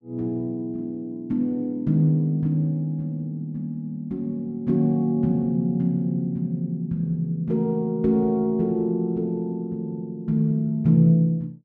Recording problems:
none

